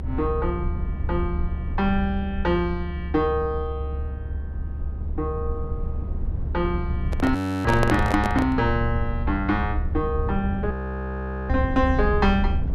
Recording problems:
low-frequency rumble; below 80 Hz, SNR 4 dB
handling noise; from 7 to 8.5 s; peak +4 dB vs average level
audio freezing; at 7.5 s and at 11 s for 1 s

